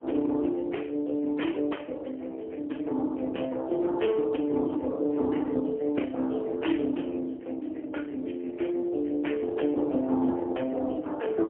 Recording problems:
telephone audio; 220 Hz to 3.2 kHz, AMR-NB, then MP3

